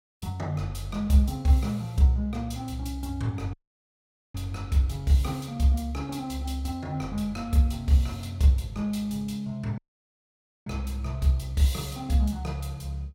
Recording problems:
dropout; at 3.5 s for 1 s and at 10 s for 1 s

